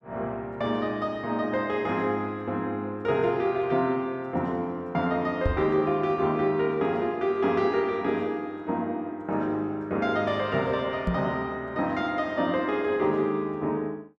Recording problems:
microphone bump; at 5.5 s and at 11 s; peak +3 dB vs average level

